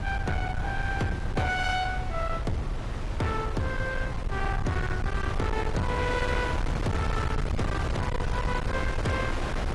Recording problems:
lossy codec; AAC, log-spectral distance 2 dB, nothing above 11.3 kHz
distorted audio; hard clipping, signal-to-distortion ratio 7 dB
low-frequency rumble; below 120 Hz, SNR 2 dB
wind on the microphone; below 1.3 kHz, SNR 5 dB

